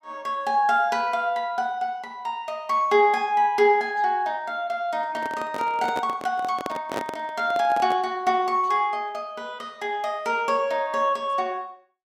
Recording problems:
handling noise; from 5 to 8 s; peak -1 dB vs average level

